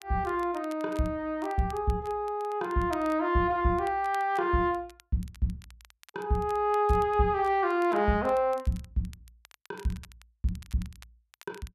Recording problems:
crackle; vinyl, SNR 26 dB

